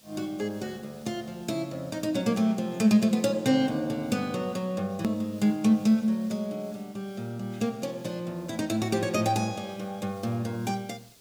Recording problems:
hiss; SNR 27 dB
hard cut with a click; at 5 s

